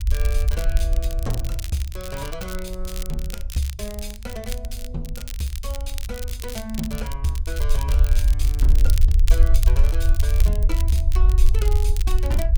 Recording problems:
rumble; below 58 Hz, SNR -9 dB
crackle; vinyl, SNR 7 dB

